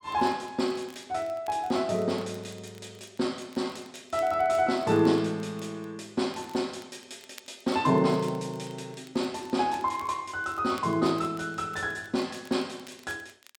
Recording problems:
crackle; vinyl, SNR 26 dB

